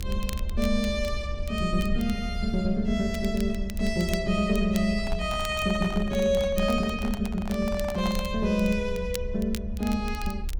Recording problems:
low-frequency rumble; below 72 Hz, SNR 8 dB
crackle; vinyl, SNR 17 dB
microphone handling noise; from 5 to 8.5 s; peak -5 dB vs average level

